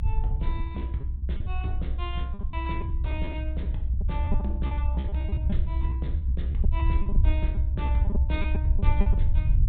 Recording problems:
treble missing; nothing above 4 kHz
rumble; below 70 Hz, SNR -9 dB
lost packets; 12% of the sound replaced, filled with repeated pitch periods

